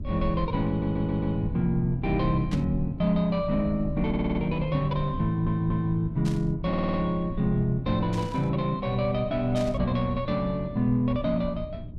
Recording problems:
hum; 60 Hz, harmonics up to 660 Hz, SNR 19 dB
rumble; below 110 Hz, SNR 11 dB
audio stuttering; 4 times, first at 0.5 s
burst of static; 4 times, first at 2.5 s; peak -10 dB vs average level

